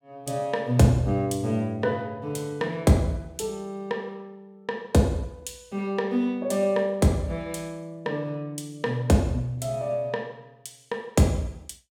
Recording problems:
none

